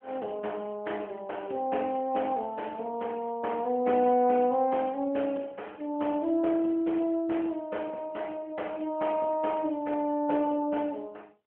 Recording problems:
telephone audio; 220 Hz to 3.3 kHz, AMR-NB

